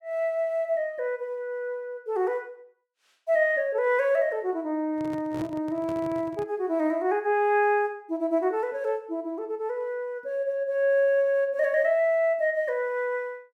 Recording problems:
microphone handling noise; from 5 to 6.5 s; peak -7 dB vs average level

